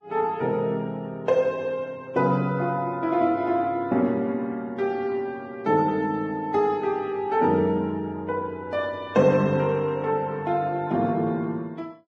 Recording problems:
lossy codec; Vorbis, log-spectral distance 2 dB

